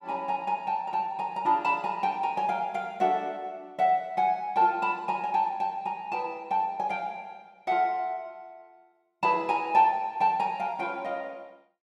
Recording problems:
none

